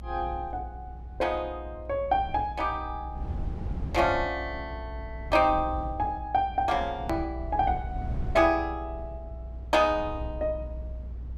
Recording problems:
low-frequency rumble; below 96 Hz, strongest tone 60 Hz, SNR 10 dB
hard cut with a click; at 7 s

